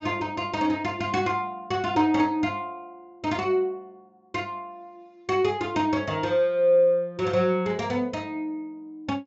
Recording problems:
treble cut off; nothing above 8 kHz

